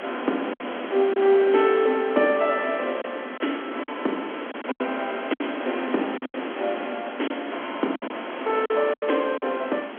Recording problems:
telephone audio; 220 Hz to 3.6 kHz, G.711
background hiss; SNR 9 dB
wind noise; below 830 Hz, SNR 23 dB
lost packets; 7% of the sound replaced, filled with silence

